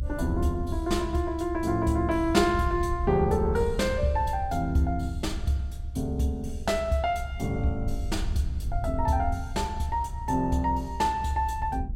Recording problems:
low-frequency rumble; below 74 Hz, SNR 7 dB

